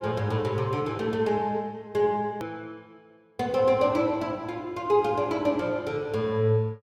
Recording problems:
click at an edit; at 2.5 s

